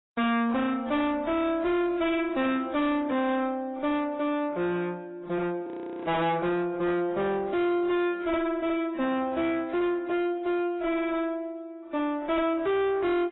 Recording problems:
lossy codec; AAC, log-spectral distance 2 dB, nothing above 3.8 kHz
distortion; soft clipping, signal-to-distortion ratio 7 dB
audio freezing; at 5.5 s

